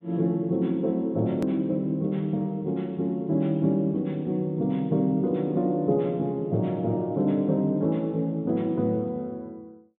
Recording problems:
treble cut off; nothing above 4 kHz
hard cut with a click; at 1.5 s

